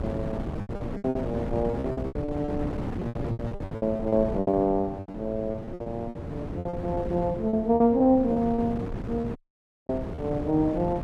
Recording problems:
wind on the microphone; below 370 Hz, SNR 7 dB
packet loss; 17% of the sound replaced, filled with repeated pitch periods
dropout; at 9.5 s for 0.5 s

